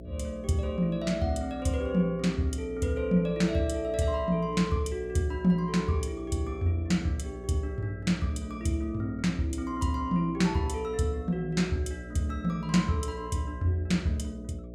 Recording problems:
hum; 60 Hz, harmonics up to 660 Hz, SNR 13 dB

